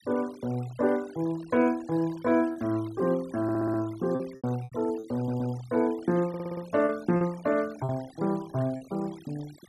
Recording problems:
noise reduction artefacts; signal-to-artefact ratio 21 dB
lost packets; 5% of the sound replaced, filled with repeated pitch periods
stutter; at 3.5 s, at 5 s and at 6.5 s

